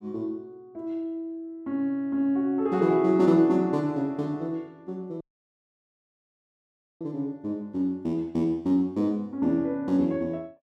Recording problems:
audio cutting out; at 5 s for 2 s

